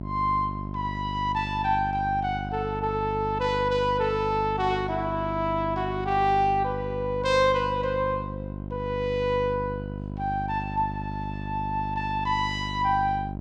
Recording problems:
hum; 50 Hz, harmonics up to 1 kHz, SNR 8 dB

